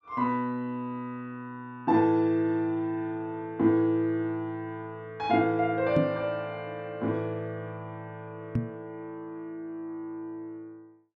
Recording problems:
microphone bump; at 6 s and at 8.5 s; peak +6 dB vs average level

